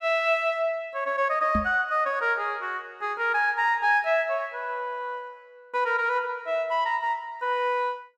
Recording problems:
knock on the microphone; at 1.5 s; peak +1 dB vs average level

